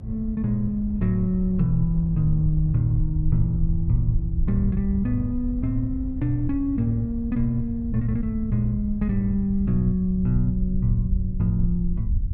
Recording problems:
mains hum; 50 Hz, harmonics up to 300 Hz, SNR 17 dB
low-frequency rumble; below 84 Hz, SNR 5 dB
wind noise; below 340 Hz, SNR 25 dB

